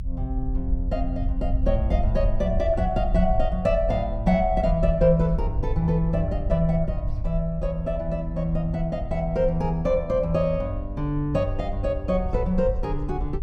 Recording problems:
rumble; below 64 Hz, SNR 4 dB

